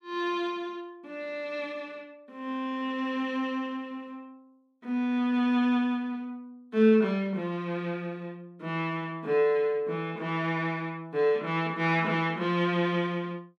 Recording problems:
none

